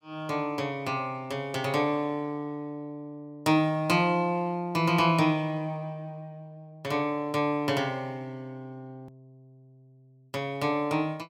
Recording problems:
edit click; at 9 s

